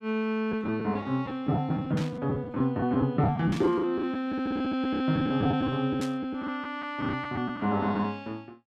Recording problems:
lost packets; 10% of the sound replaced, filled with the last packet
static burst; at 2 s, at 3.5 s and at 6 s; peak -7 dB vs average level

